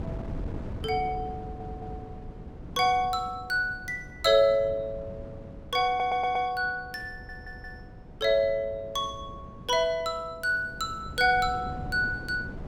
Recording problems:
wind on the microphone; below 260 Hz, SNR 15 dB
audio stuttering; at 1.5 s, at 6 s and at 7 s

